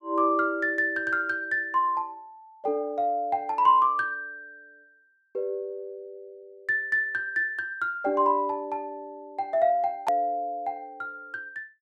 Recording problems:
edit click; at 10 s

